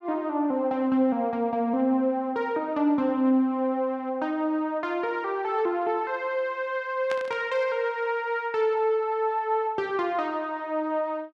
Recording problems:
static burst; at 7 s; peak -6 dB vs average level

